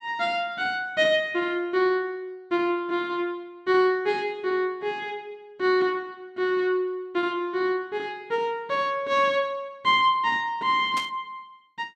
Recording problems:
static burst; at 11 s; peak -5 dB vs average level

